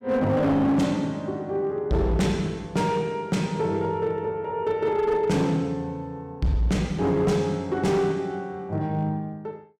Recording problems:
distorted audio; hard clipping, signal-to-distortion ratio 11 dB

